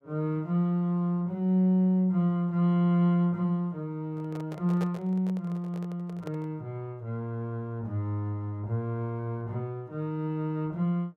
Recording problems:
handling noise; from 4 to 6.5 s; peak -5 dB vs average level

